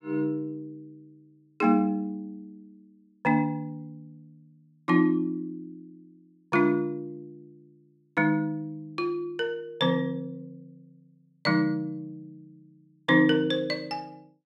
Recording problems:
none

